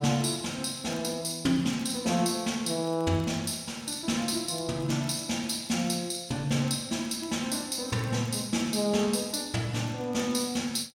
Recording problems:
crackle; vinyl, SNR 26 dB

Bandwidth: 16 kHz